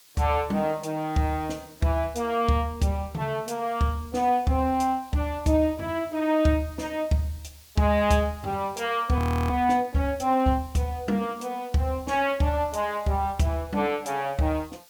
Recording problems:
background hiss; slope +2 dB per octave, SNR 25 dB
frozen audio; at 9 s

